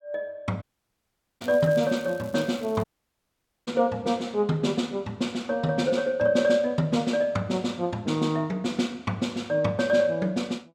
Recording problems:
audio cutting out; at 0.5 s for 1 s and at 3 s for 1 s
crackle; from 1.5 to 3 s; loose cable, SNR 24 dB

